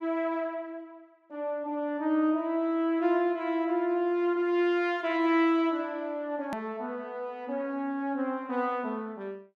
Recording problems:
click at an edit; at 6.5 s

